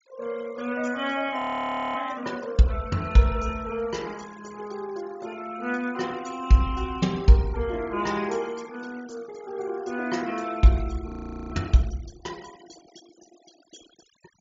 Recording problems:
treble missing; nothing above 7.3 kHz
noise reduction artefacts; signal-to-artefact ratio 21 dB
audio freezing; at 1.5 s for 0.5 s and at 11 s

